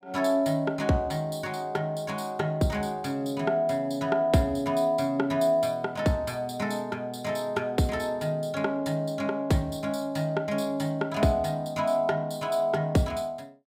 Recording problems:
none

